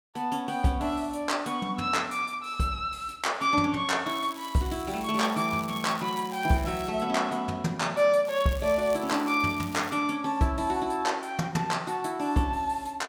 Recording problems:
crackling; from 4 to 7 s and from 8.5 to 10 s; loose cable, SNR 18 dB

